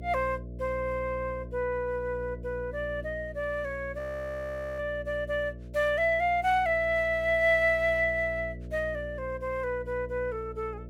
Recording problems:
hum; 60 Hz, harmonics up to 660 Hz, SNR 14 dB
audio freezing; at 4 s for 1 s

